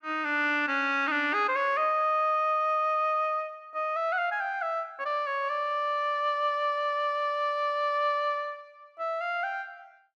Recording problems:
none

